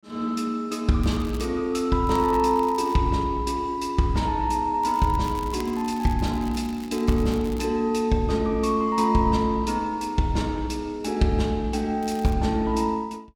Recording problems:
crackling; 4 times, first at 1 s; loose cable, SNR 22 dB

